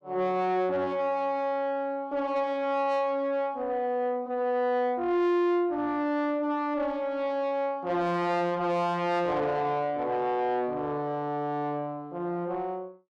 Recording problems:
distortion; soft clipping, signal-to-distortion ratio 11 dB

